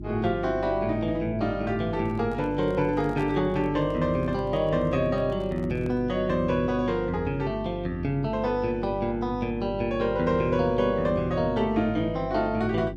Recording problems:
hum; 50 Hz, harmonics up to 350 Hz, SNR 11 dB
handling noise; from 2 to 6 s; peak -11 dB vs average level

